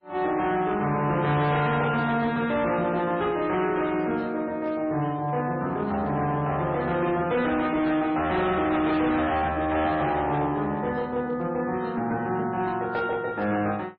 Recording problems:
lossy codec; MP3, log-spectral distance 2 dB
distortion; hard clipping, signal-to-distortion ratio 11 dB

